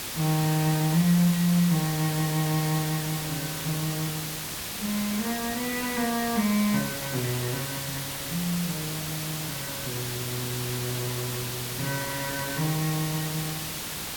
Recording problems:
hiss; slope -1 dB per octave, SNR 3 dB

